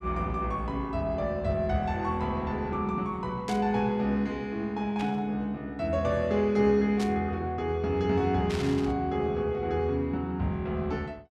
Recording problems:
static burst; 4 times, first at 3.5 s; peak -5 dB vs average level

